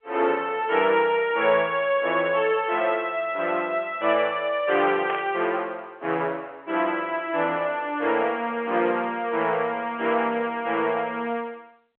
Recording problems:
phone line; 300 Hz to 3.3 kHz, G.711
burst of static; at 5 s; peak -3 dB vs average level

